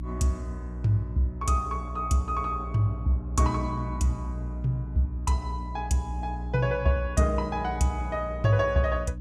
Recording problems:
hum; 60 Hz, harmonics up to 300 Hz, SNR 8 dB

